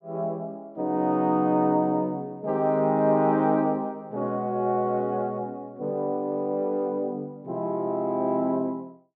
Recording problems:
none

